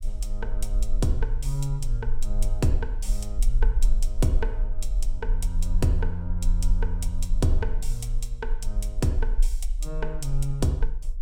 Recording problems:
low-frequency rumble; below 38 Hz, strongest tone 22 Hz, SNR -1 dB

